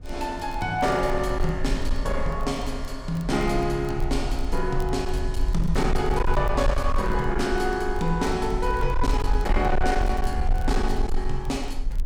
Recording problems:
distorted audio; hard clipping, uneven, signal-to-distortion ratio 11 dB
low-frequency rumble; below 50 Hz, strongest tone 18 Hz, SNR 4 dB
crackling; vinyl, SNR 28 dB

